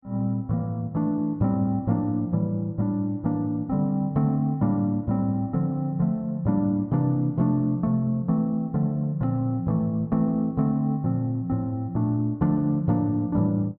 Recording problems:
none

